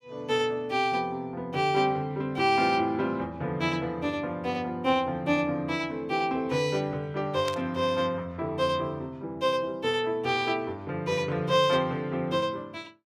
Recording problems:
burst of static; at 7.5 s; peak -5 dB vs average level

